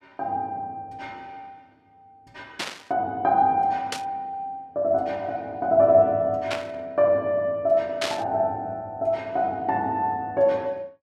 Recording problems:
static burst; 4 times, first at 2.5 s; peak +1 dB vs average level

